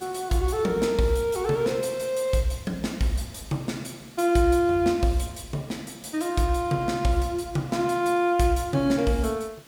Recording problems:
hiss; slope -2 dB per octave, SNR 25 dB

